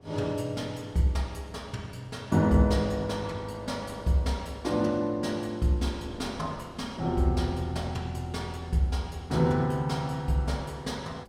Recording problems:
wind noise; below 520 Hz, SNR 24 dB

